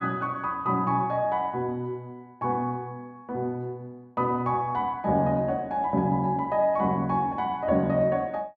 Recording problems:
none

